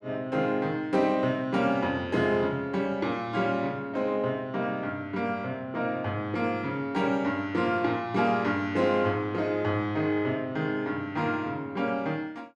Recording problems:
none

